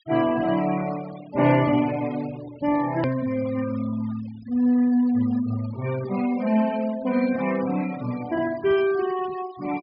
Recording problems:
low-pass filter; nothing above 5.5 kHz
denoising artefacts; signal-to-artefact ratio 18 dB
click at an edit; at 3 s

